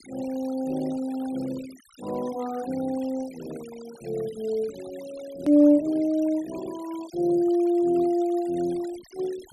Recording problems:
denoising artefacts; signal-to-artefact ratio 22 dB
click at an edit; at 5.5 s

